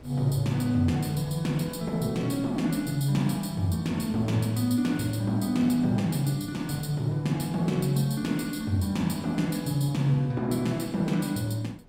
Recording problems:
wind on the microphone; below 380 Hz, SNR 25 dB

